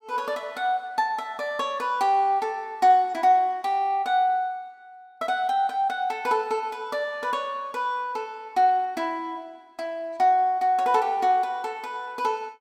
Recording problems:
none

